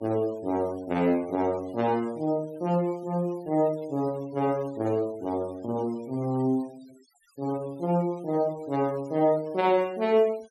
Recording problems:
noise reduction artefacts; signal-to-artefact ratio 25 dB

